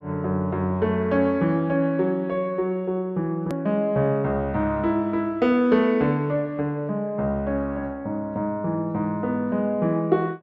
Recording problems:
click at an edit; at 3.5 s

